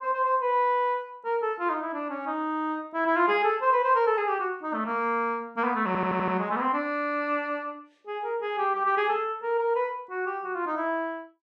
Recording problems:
audio stuttering; at 6 s

